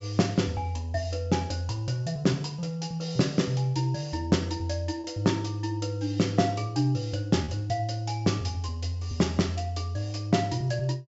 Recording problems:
low-pass filter; nothing above 8 kHz
lost packets; 0.7% of the sound replaced, filled with repeated pitch periods

